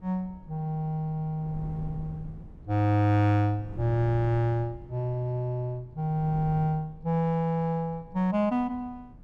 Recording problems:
wind noise; below 150 Hz, SNR 18 dB

